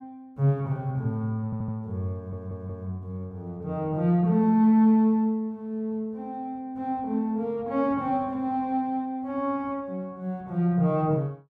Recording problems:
audio stuttering; at 1.5 s and at 2 s

